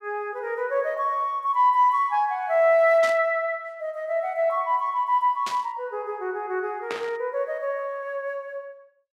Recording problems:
static burst; at 3 s, at 5.5 s and at 7 s; peak -5 dB vs average level

